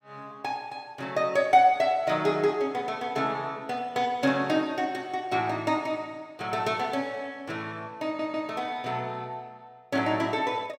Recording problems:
audio stuttering; at 8 s

